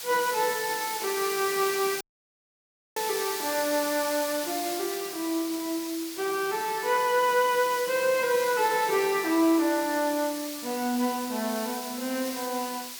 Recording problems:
hiss; slope +3 dB per octave, SNR 7 dB
audio cutting out; at 2 s for 1 s

